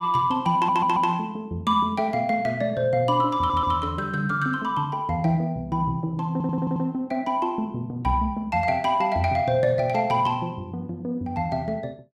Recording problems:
audio stuttering; at 0.5 s, at 3.5 s and at 6.5 s

